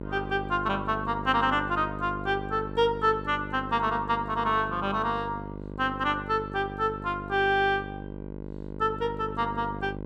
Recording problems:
mains hum; 50 Hz, harmonics up to 1.1 kHz, SNR 10 dB

